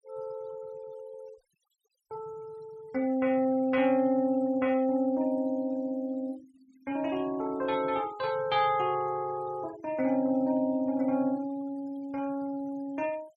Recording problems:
denoising artefacts; signal-to-artefact ratio 27 dB

